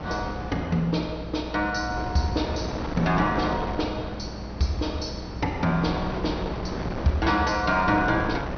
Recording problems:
low-pass filter; nothing above 6.1 kHz
electrical hum; 60 Hz, harmonics up to 360 Hz, SNR 13 dB
wind noise; below 820 Hz, SNR 8 dB

